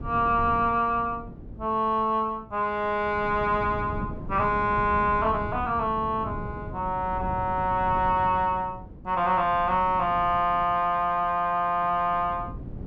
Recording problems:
wind noise; below 230 Hz, SNR 13 dB

